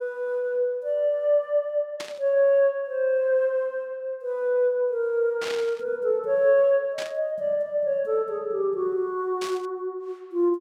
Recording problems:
burst of static; 4 times, first at 2 s; peak -5 dB vs average level

